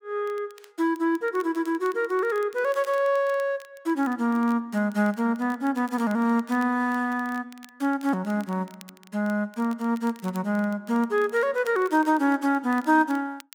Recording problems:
crackling; vinyl, SNR 27 dB

